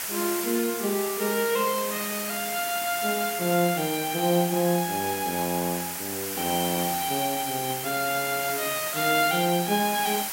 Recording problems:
background hiss; slope 0 dB per octave, SNR 4 dB

